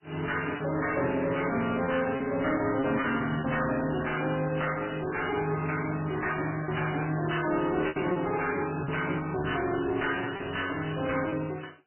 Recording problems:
lossy codec; MP3, log-spectral distance 12 dB, nothing above 2.9 kHz
distorted audio; soft clipping, signal-to-distortion ratio 10 dB
lost packets; 5% of the sound replaced, filled with repeated pitch periods

